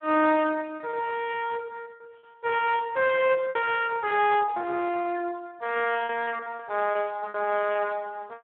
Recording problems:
telephone audio; 260 Hz to 3.6 kHz, Speex
lost packets; 10% of the sound replaced, filled with repeated pitch periods

